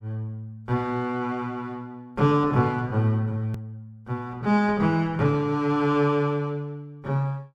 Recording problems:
edit click; at 3.5 s

